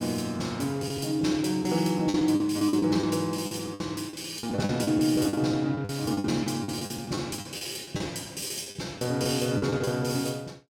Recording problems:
lost packets; 14% of the sound replaced, filled with the last packet

